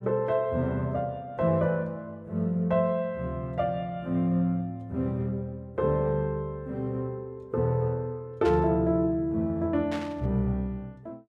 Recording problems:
burst of static; at 8.5 s and at 10 s; peak -7 dB vs average level

